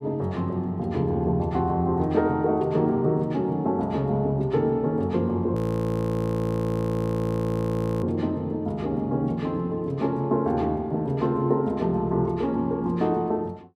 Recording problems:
audio freezing; at 5.5 s for 2.5 s

